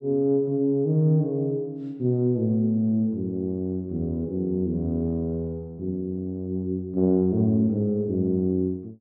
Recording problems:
none

